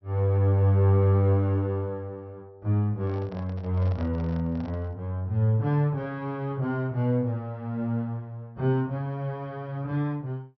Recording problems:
treble cut off; nothing above 5.9 kHz
microphone handling noise; from 3 to 5 s; peak -11 dB vs average level

